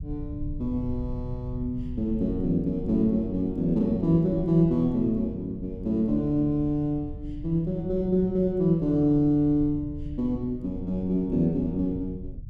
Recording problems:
low-frequency rumble; below 120 Hz, SNR 13 dB

